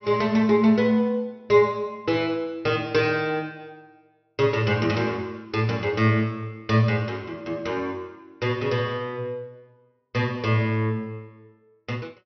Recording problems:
treble cut off; nothing above 6 kHz

